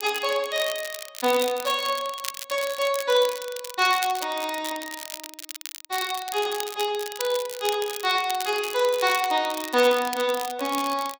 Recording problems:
crackle; vinyl, SNR 10 dB

